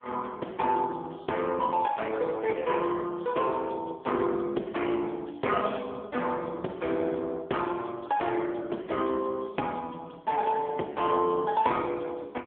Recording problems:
phone line; 280 Hz to 3.5 kHz, AMR-NB

